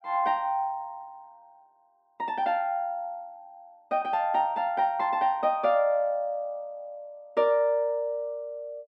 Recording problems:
none

